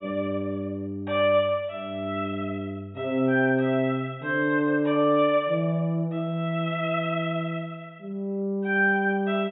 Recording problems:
low-pass filter; nothing above 4 kHz

